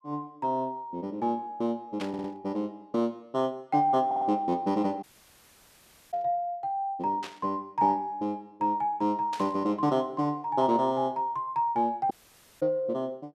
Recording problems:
static burst; 4 times, first at 2 s; peak -6 dB vs average level
stutter; at 2 s and at 4 s
dropout; at 5 s for 1 s and at 12 s for 0.5 s

